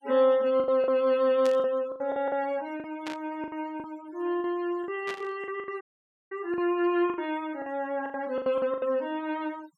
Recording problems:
denoising artefacts; signal-to-artefact ratio 23 dB
lost packets; 12% of the sound replaced, filled with the last packet
static burst; at 1.5 s, at 3 s and at 5 s; peak -6 dB vs average level
dropout; at 6 s for 0.5 s

